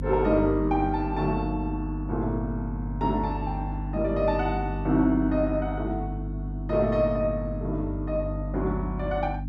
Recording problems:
hum; 50 Hz, harmonics up to 300 Hz, SNR 5 dB

